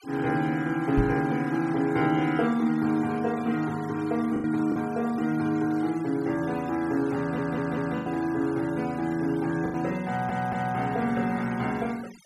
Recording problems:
noise reduction artefacts; signal-to-artefact ratio 20 dB
lost packets; 3% of the sound replaced, filled with the last packet
microphone thump; at 1 s; peak +4 dB vs average level
stutter; at 7 s and at 10 s

